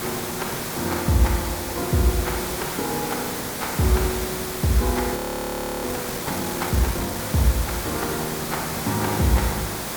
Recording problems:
background hiss; slope -4 dB per octave, SNR 3 dB
audio freezing; at 5 s for 0.5 s

